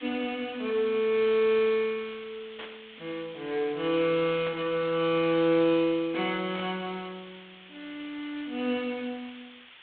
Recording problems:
telephone audio; 190 Hz to 3.6 kHz, G.726
hiss; SNR 21 dB
static burst; at 2.5 s, at 4.5 s and at 6.5 s; peak -10 dB vs average level

